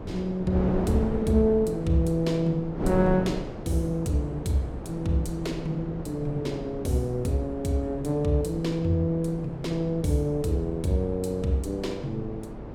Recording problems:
wind noise; below 450 Hz, SNR 9 dB

